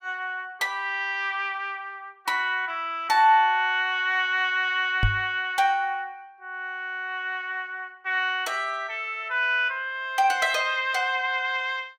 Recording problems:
microphone bump; at 5 s; peak +4 dB vs average level

